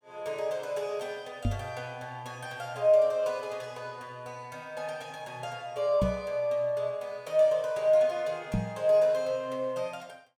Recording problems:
microphone bump; at 1.5 s, at 6 s and at 8.5 s; peak +4 dB vs average level

